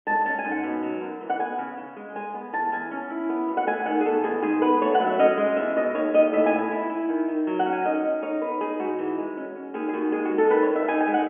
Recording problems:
telephone audio; 260 Hz to 3.3 kHz, G.711

